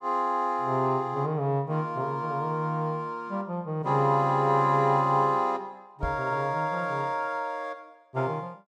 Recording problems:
knock on the microphone; at 6 s; peak -2 dB vs average level

